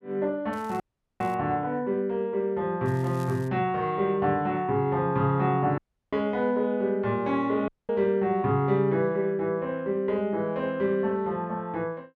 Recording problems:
crackling; at 0.5 s and at 3 s; loose cable, SNR 27 dB
dropout; at 1 s, at 6 s and at 7.5 s

